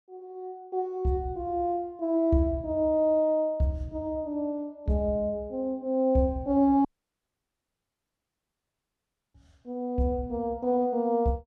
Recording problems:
audio cutting out; at 7 s for 2.5 s

